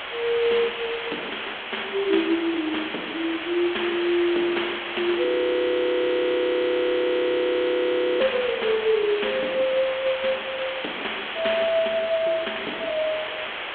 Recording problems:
telephone audio; 240 Hz to 3.5 kHz, G.726
hiss; SNR 6 dB
frozen audio; at 5.5 s for 3 s

